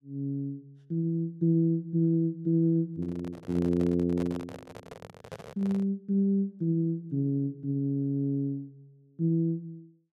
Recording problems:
microphone handling noise; from 3 to 6 s; peak -8 dB vs average level

